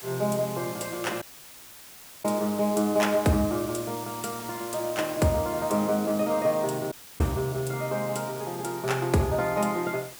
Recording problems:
background hiss; slope -1 dB per octave, SNR 13 dB
audio cutting out; at 1 s for 1 s and at 7 s

